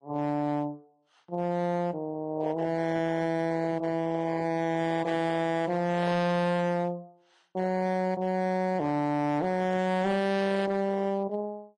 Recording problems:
codec artefacts; MP3, then AAC, log-spectral distance 2 dB, nothing above 9.8 kHz
distortion; hard clipping, signal-to-distortion ratio 7 dB

